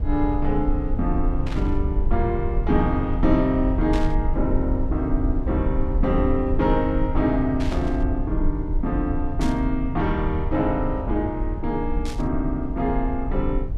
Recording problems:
low-frequency rumble; below 68 Hz, SNR 3 dB
static burst; 5 times, first at 1.5 s; peak -7 dB vs average level

